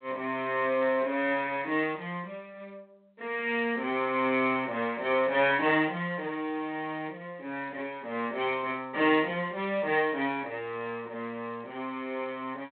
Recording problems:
telephone audio; 280 Hz to 3.9 kHz, G.726

